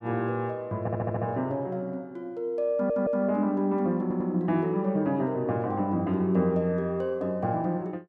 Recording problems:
audio stuttering; at 1 s, at 2.5 s and at 4 s

